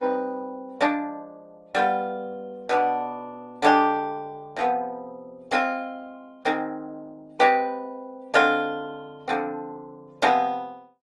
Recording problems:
lossy codec; Opus, then AAC, log-spectral distance 2 dB, nothing above 11.3 kHz

